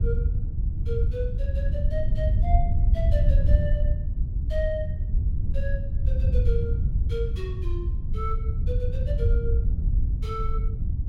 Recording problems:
wind noise; below 82 Hz, SNR -9 dB

